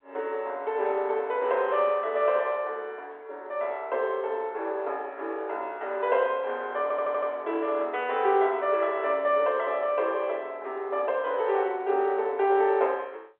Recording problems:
phone line; 340 Hz to 3.6 kHz, G.711
stutter; at 7 s

